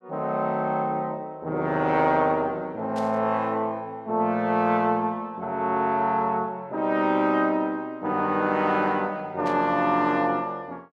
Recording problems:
burst of static; at 3 s and at 9.5 s; peak -12 dB vs average level

